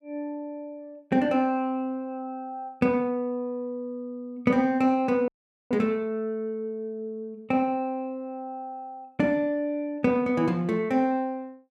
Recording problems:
dropout; at 5.5 s

